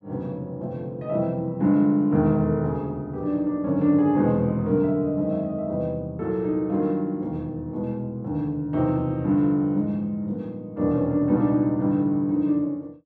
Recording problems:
none

